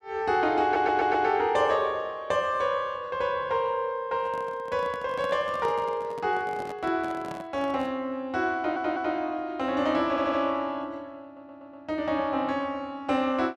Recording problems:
audio stuttering; 4 times, first at 0.5 s
handling noise; from 4 to 8 s; peak -8 dB vs average level

